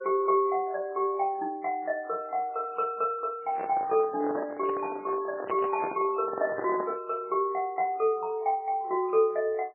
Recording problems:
lossy codec; MP3, log-spectral distance 2 dB, nothing above 2.4 kHz
handling noise; from 3.5 to 7 s; peak -2 dB vs average level

